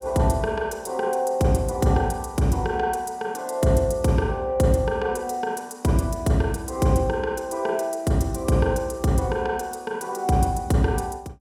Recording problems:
none

